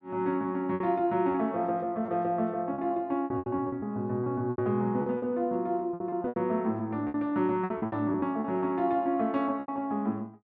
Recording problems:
lost packets; 11% of the sound replaced, filled with repeated pitch periods

